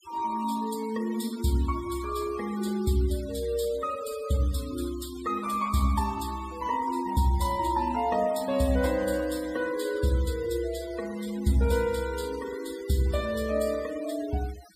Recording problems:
noise reduction artefacts; signal-to-artefact ratio 17 dB

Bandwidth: 15 kHz